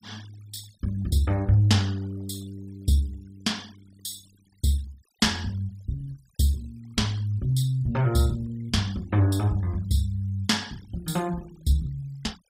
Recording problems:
denoising artefacts; signal-to-artefact ratio 24 dB

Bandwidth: 15.5 kHz